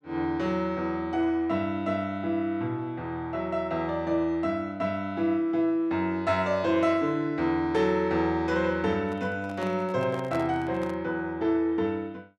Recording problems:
microphone handling noise; from 9 to 11 s; peak -7 dB vs average level

